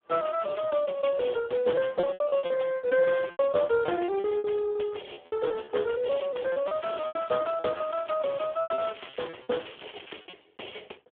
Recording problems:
phone line; 300 Hz to 3.3 kHz, Speex
lost packets; 11% of the sound replaced, filled with repeated pitch periods
crackling; from 6.5 to 9.5 s and at 9.5 s; loose cable, SNR 21 dB

